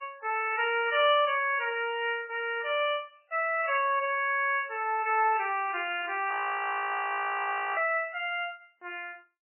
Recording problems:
lossy compression; MP3, log-spectral distance 4 dB, nothing above 2.9 kHz
audio freezing; at 6.5 s for 1.5 s

